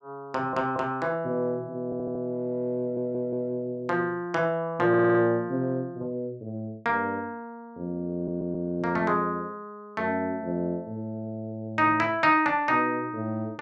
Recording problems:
audio stuttering; 4 times, first at 2 s

